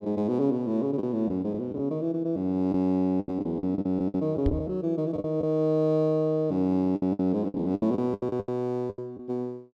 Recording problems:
packet loss; 12% of the sound replaced, filled with the last packet
microphone bump; at 4.5 s; peak +3 dB vs average level

